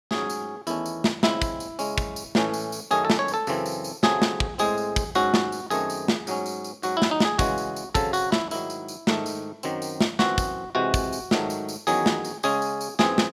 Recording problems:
none

